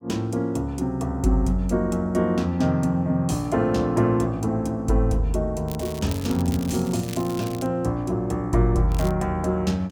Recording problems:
crackle; from 5.5 to 7.5 s and at 9 s; loose cable, SNR 17 dB

